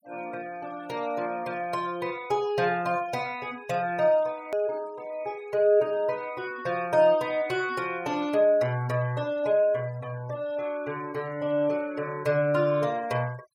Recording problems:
denoising artefacts; signal-to-artefact ratio 23 dB
click at an edit; at 4.5 s

